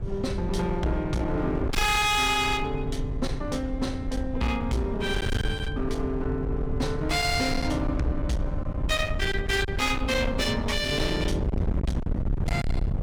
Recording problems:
distorted audio; hard clipping, signal-to-distortion ratio 7 dB
wind noise; below 160 Hz, SNR 4 dB

